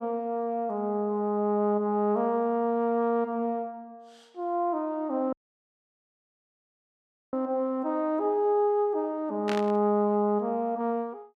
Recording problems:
dropout; at 5.5 s for 2 s
burst of static; at 9.5 s; peak -4 dB vs average level

